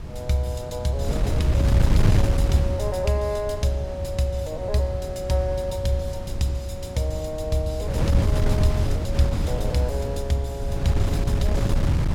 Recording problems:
wind noise; below 130 Hz, SNR -1 dB

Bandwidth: 17 kHz